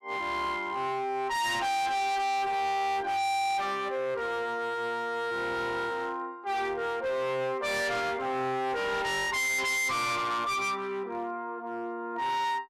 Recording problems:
distorted audio; hard clipping, uneven, signal-to-distortion ratio 6 dB

